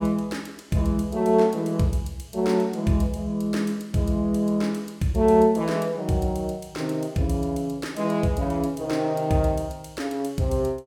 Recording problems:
none

